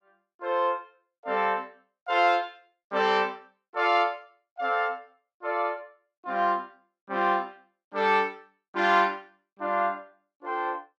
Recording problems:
none

